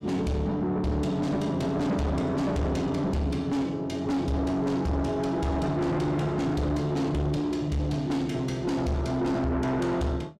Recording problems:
distortion; soft clipping, signal-to-distortion ratio 7 dB

